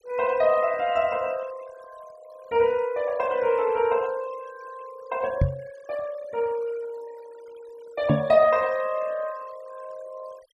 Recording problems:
denoising artefacts; signal-to-artefact ratio 23 dB
knock on the microphone; at 5.5 s and at 8 s; peak +6 dB vs average level

